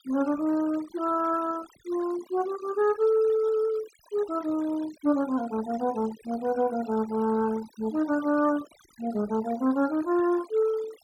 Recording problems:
noise reduction artefacts; signal-to-artefact ratio 19 dB

